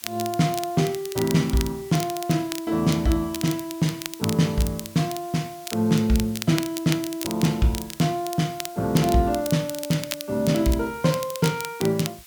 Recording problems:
background hiss; slope +2 dB per octave, SNR 21 dB
crackling; vinyl, SNR 11 dB

